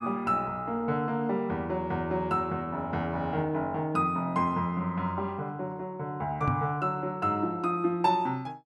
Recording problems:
microphone thump; at 6.5 s; peak +4 dB vs average level

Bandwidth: 13 kHz